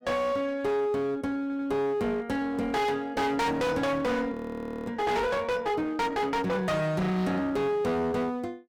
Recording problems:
distortion; hard clipping, uneven, signal-to-distortion ratio 6 dB
stutter; at 1.5 s
frozen audio; at 4.5 s for 0.5 s

